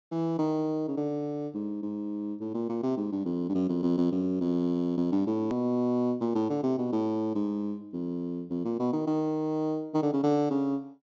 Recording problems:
treble missing; nothing above 7.6 kHz
click at an edit; at 5.5 s

